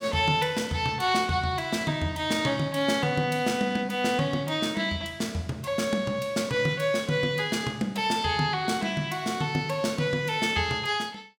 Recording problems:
none

